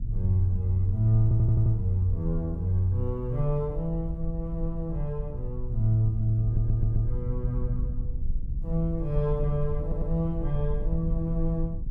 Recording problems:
wind on the microphone; below 58 Hz, SNR 6 dB
audio stuttering; at 1 s, at 6.5 s and at 10 s

